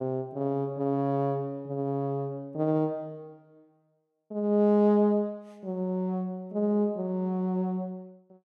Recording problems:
none

